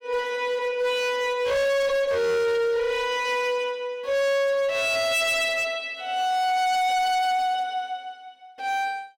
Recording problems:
distorted audio; hard clipping, signal-to-distortion ratio 7 dB

